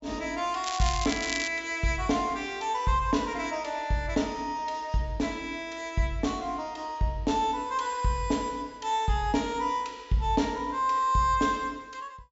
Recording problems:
treble cut off; nothing above 8 kHz
crackling; at 0.5 s; loose cable, SNR 6 dB

